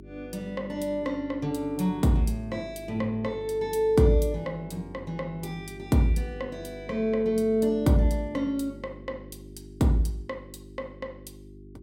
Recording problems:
electrical hum; 50 Hz, harmonics up to 400 Hz, SNR 18 dB

